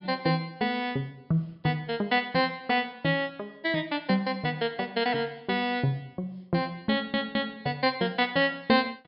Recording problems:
treble missing; nothing above 5.5 kHz
audio stuttering; at 7 s

